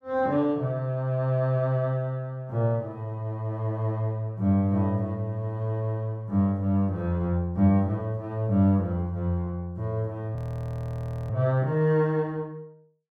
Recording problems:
frozen audio; at 10 s for 1 s

